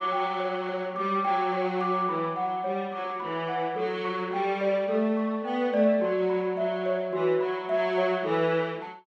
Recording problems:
none

